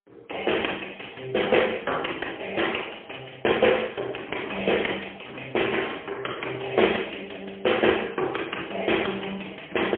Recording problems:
phone line; 280 Hz to 3.3 kHz, AMR-NB, then MP3

